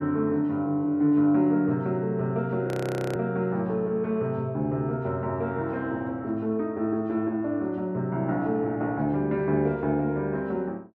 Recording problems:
audio freezing; at 2.5 s

